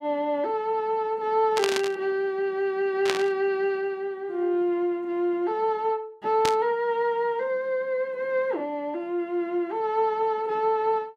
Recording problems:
static burst; at 1.5 s, at 3 s and at 6.5 s; peak +3 dB vs average level

